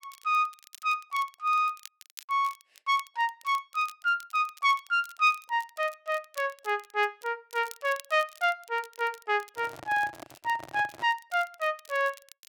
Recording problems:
crackling; vinyl, SNR 22 dB
handling noise; from 9.5 to 11 s; peak -10 dB vs average level

